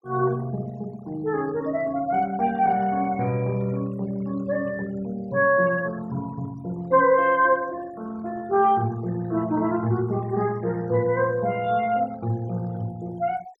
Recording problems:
noise reduction artefacts; signal-to-artefact ratio 23 dB

